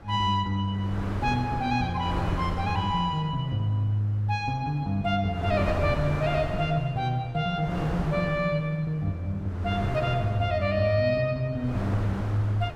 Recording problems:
wind on the microphone; below 690 Hz, SNR 8 dB

